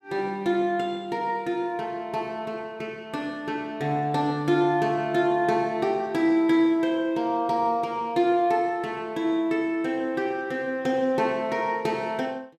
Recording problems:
none

